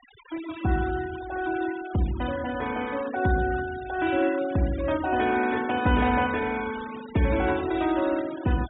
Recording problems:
treble cut off; nothing above 4 kHz
noise reduction artefacts; signal-to-artefact ratio 16 dB

